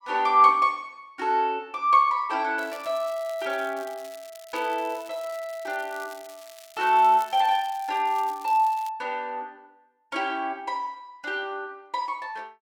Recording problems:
crackle; from 2.5 to 9 s; loose cable, SNR 23 dB

